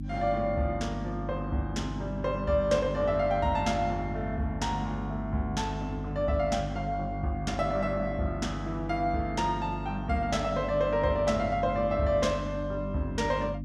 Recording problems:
electrical hum; 50 Hz, harmonics up to 300 Hz, SNR 6 dB

